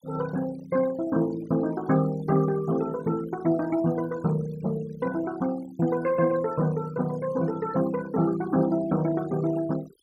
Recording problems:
denoising artefacts; signal-to-artefact ratio 19 dB

